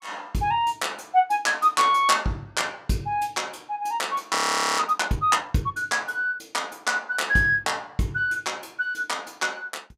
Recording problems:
audio freezing; at 4.5 s

